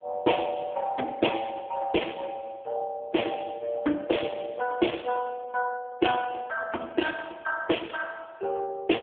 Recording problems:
telephone audio; 240 Hz to 3.4 kHz, AMR-NB

